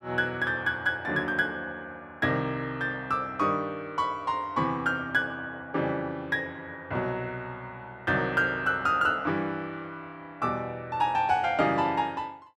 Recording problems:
none

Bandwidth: 14.5 kHz